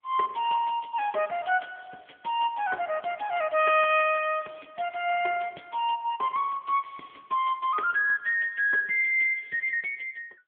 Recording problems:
telephone audio; 300 Hz to 3.3 kHz, AMR-NB

